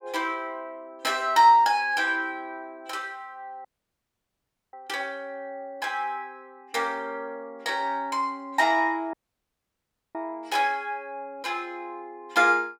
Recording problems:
audio cutting out; at 3.5 s for 1 s and at 9 s for 1 s

